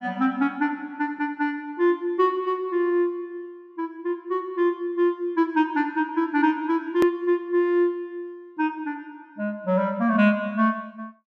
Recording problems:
hard cut with a click; at 7 s

